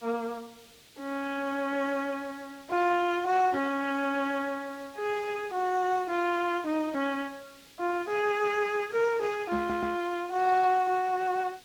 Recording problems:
codec artefacts; Speex, then Speex, log-spectral distance 3 dB
hiss; SNR 24 dB
knock on the microphone; at 9.5 s; peak -1 dB vs average level
stutter; at 9.5 s

